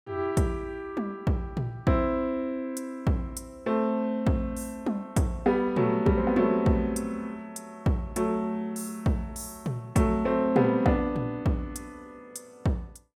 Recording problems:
none

